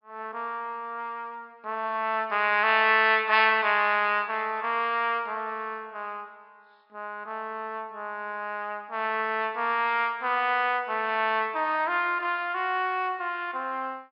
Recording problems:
low-pass filter; nothing above 5.5 kHz

